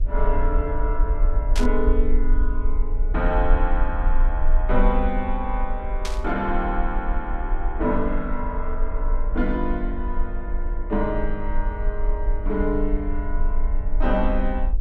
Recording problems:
hum; 60 Hz, harmonics up to 660 Hz, SNR 19 dB
rumble; below 38 Hz, strongest tone 22 Hz, SNR -1 dB
static burst; at 1.5 s and at 6 s; peak +1 dB vs average level

